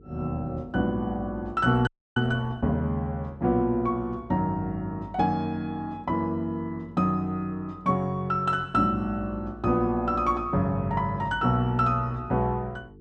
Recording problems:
hum; 50 Hz, harmonics up to 450 Hz, SNR 23 dB
frozen audio; at 2 s

